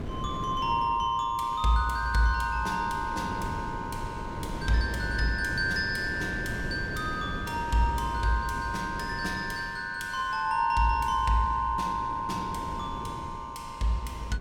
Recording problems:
wind noise; below 360 Hz, SNR 10 dB

